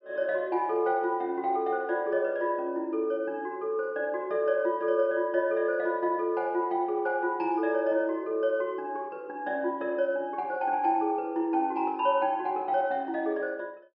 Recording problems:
treble cut off; nothing above 5.5 kHz

